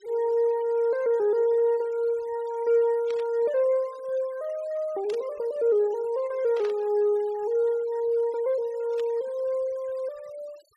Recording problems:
denoising artefacts; signal-to-artefact ratio 27 dB
static burst; 4 times, first at 3 s; peak -13 dB vs average level

